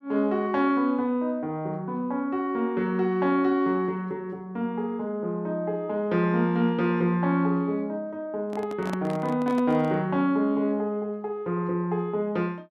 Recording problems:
microphone handling noise; from 8.5 to 10 s; peak -4 dB vs average level

